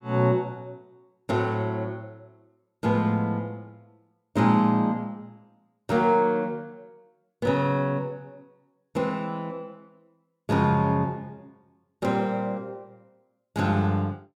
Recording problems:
none

